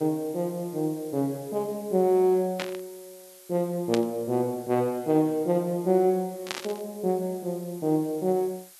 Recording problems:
background hiss; slope +3 dB per octave, SNR 22 dB
static burst; at 2.5 s, at 4 s and at 6.5 s; peak 0 dB vs average level

